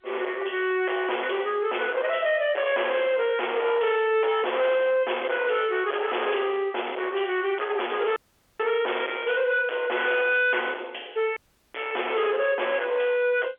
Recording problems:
telephone audio; 370 Hz to 3.4 kHz, G.711
distorted audio; hard clipping, uneven, signal-to-distortion ratio 6 dB
audio cutting out; at 8 s and at 11 s

